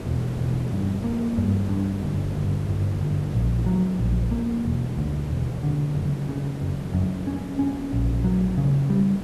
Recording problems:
hiss; slope -8 dB per octave, SNR 9 dB

